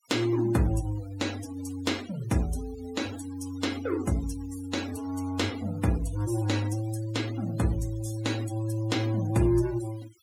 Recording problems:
denoising artefacts; signal-to-artefact ratio 15 dB

